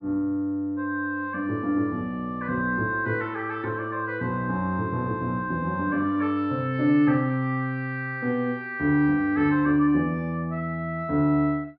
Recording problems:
treble cut off; nothing above 5.9 kHz

